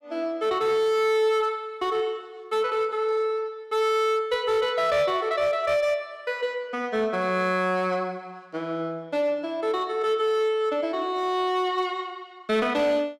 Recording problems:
distortion; hard clipping, signal-to-distortion ratio 11 dB

